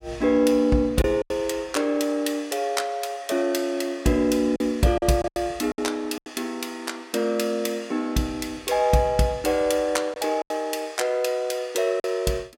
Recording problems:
lost packets; 4% of the sound replaced, filled with silence

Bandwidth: 16.5 kHz